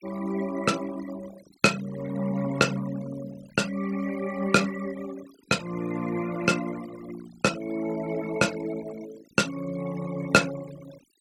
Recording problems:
denoising artefacts; signal-to-artefact ratio 16 dB

